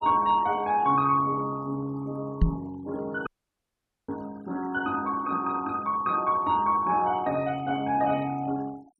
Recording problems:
denoising artefacts; signal-to-artefact ratio 22 dB
microphone thump; at 2.5 s; peak +7 dB vs average level
audio cutting out; at 3.5 s for 1 s

